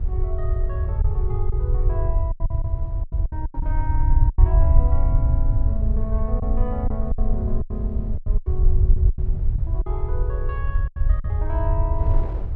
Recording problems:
hum; 50 Hz, harmonics up to 350 Hz, SNR 14 dB
rumble; below 74 Hz, SNR -11 dB
wind on the microphone; below 510 Hz, SNR 12 dB
packet loss; 9% of the sound replaced, filled with silence

